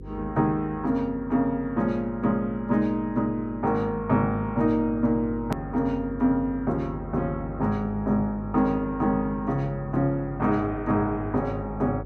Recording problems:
hum; 50 Hz, harmonics up to 500 Hz, SNR 14 dB
click at an edit; at 5.5 s

